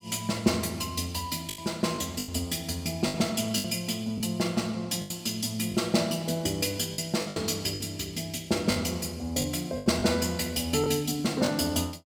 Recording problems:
lost packets; 7% of the sound replaced, filled with the last packet

